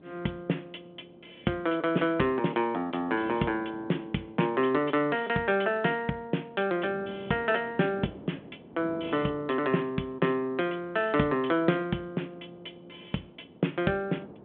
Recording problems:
phone line; 130 Hz to 3.5 kHz, G.726
wind noise; below 500 Hz, SNR 21 dB

